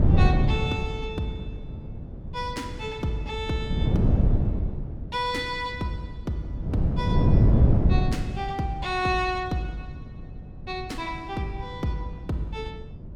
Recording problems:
wind on the microphone; below 170 Hz, SNR -6 dB

